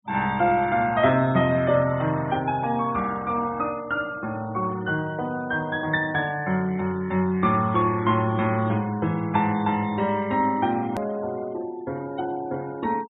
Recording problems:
treble missing; nothing above 4 kHz
denoising artefacts; signal-to-artefact ratio 23 dB
edit click; at 11 s

